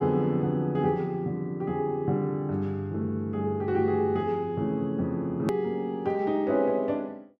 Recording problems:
hard cut with a click; at 5.5 s

